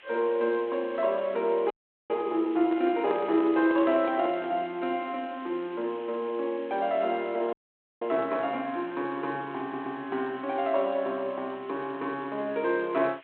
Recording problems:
phone line; 240 Hz to 4 kHz, G.726
hiss; SNR 24 dB
audio freezing; at 1.5 s and at 7.5 s
microphone handling noise; from 2.5 to 4.5 s; peak -4 dB vs average level
audio stuttering; at 9.5 s

